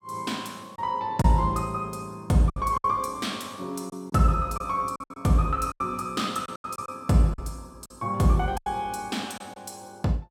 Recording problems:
lost packets; 8% of the sound replaced, filled with silence

